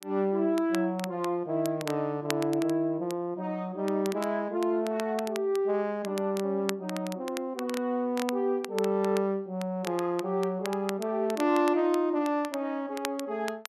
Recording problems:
crackling; vinyl, SNR 14 dB

